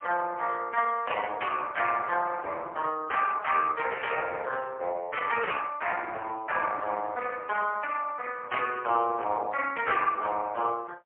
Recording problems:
phone line; 410 Hz to 3.3 kHz, AMR-NB, then MP3

